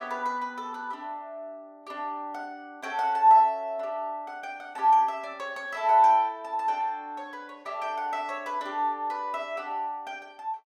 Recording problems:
none

